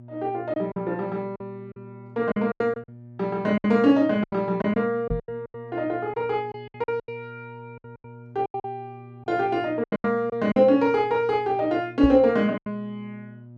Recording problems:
mains hum; 60 Hz, harmonics up to 600 Hz, SNR 20 dB
lost packets; 12% of the sound replaced, filled with silence
knock on the microphone; at 5 s and at 12 s; peak -1 dB vs average level

